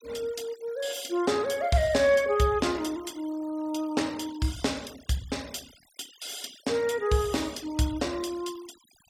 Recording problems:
denoising artefacts; signal-to-artefact ratio 20 dB

